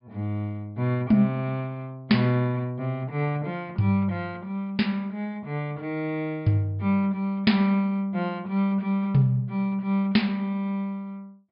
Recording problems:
treble missing; nothing above 5.2 kHz

